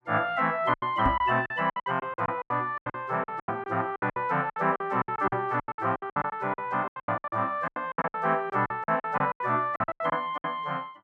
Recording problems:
lost packets; 21% of the sound replaced, filled with silence
microphone thump; at 1 s and at 3.5 s; peak +1 dB vs average level

